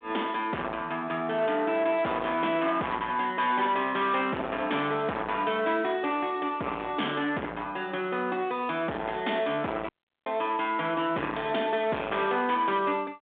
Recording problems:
telephone audio; 240 Hz to 3.6 kHz, G.726
distortion; soft clipping, signal-to-distortion ratio 7 dB
dropout; at 10 s

